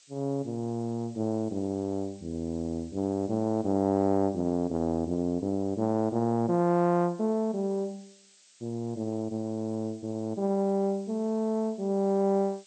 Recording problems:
lossy codec; MP2, log-spectral distance 6 dB
background hiss; SNR 27 dB

